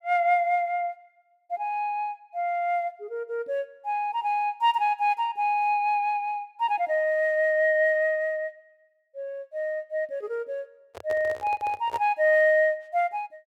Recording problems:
handling noise; from 11 to 12 s; peak -8 dB vs average level

